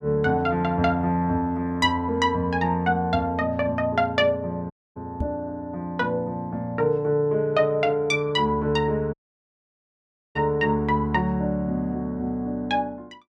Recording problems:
dropout; at 4.5 s and at 9 s for 1 s
knock on the microphone; at 5 s; peak 0 dB vs average level

